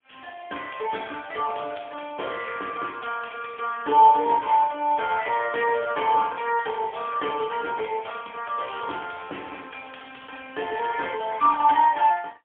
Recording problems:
phone line; 300 Hz to 3.1 kHz, AMR-NB, then MP3

